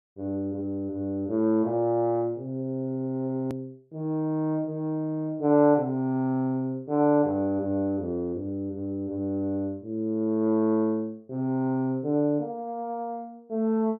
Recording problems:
click at an edit; at 3.5 s

